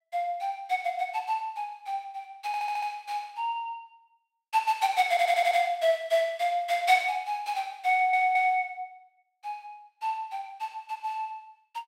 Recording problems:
audio stuttering; at 2.5 s, at 5 s and at 8 s

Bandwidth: 16 kHz